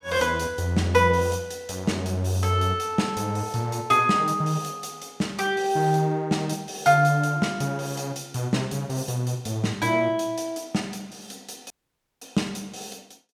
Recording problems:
dropout; at 12 s for 0.5 s

